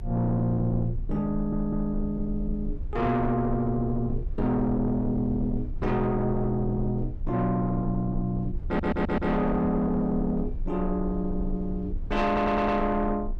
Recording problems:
distortion; soft clipping, signal-to-distortion ratio 11 dB
low-frequency rumble; below 64 Hz, strongest tone 28 Hz, SNR 9 dB
audio stuttering; at 1.5 s, at 8.5 s and at 12 s

